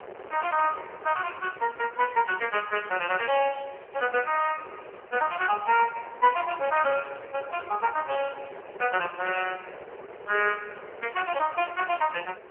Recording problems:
phone line; 340 Hz to 2.9 kHz, AMR-NB
wind on the microphone; below 970 Hz, SNR 17 dB

